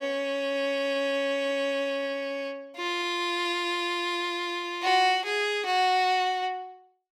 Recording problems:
none

